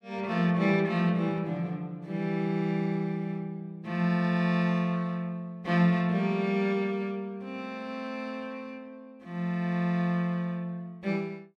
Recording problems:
none

